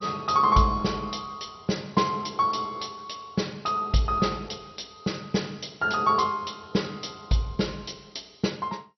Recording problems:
codec artefacts; MP2, log-spectral distance 6 dB, nothing above 5.8 kHz

